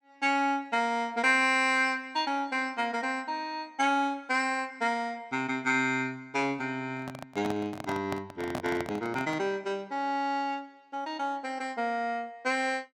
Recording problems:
microphone handling noise; from 7 to 9.5 s; peak -1 dB vs average level

